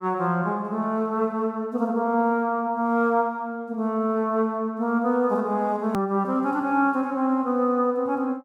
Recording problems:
edit click; at 6 s

